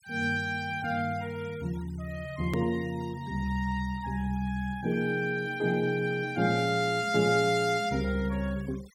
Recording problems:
noise reduction artefacts; signal-to-artefact ratio 24 dB
hard cut with a click; at 2.5 s

